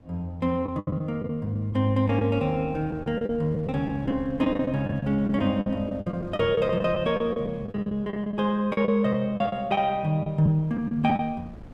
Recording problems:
wind on the microphone; below 300 Hz, SNR 20 dB
lost packets; 12% of the sound replaced, filled with the last packet

